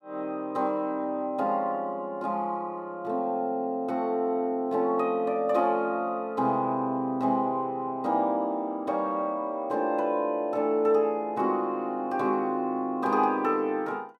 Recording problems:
none

